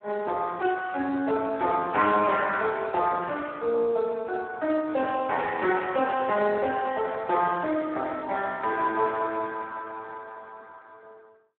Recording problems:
phone line; 240 Hz to 3.7 kHz, Speex

